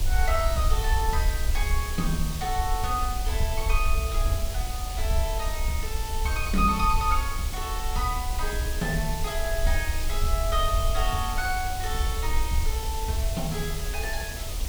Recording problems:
background hiss; SNR 6 dB
low-frequency rumble; below 60 Hz, SNR 1 dB

